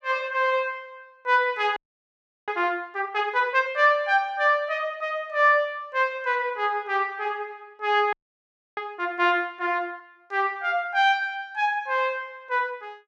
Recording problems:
frozen audio; at 2 s for 0.5 s and at 8 s for 0.5 s

